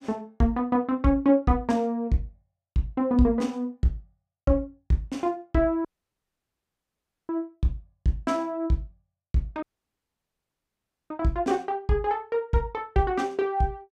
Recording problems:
audio cutting out; at 6 s for 1.5 s and at 9.5 s for 1.5 s

